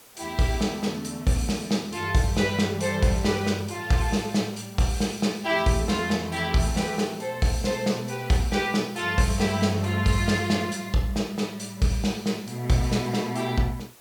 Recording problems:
hiss; slope -2 dB per octave, SNR 23 dB

